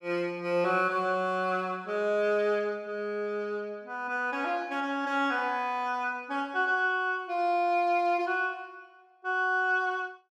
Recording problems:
none

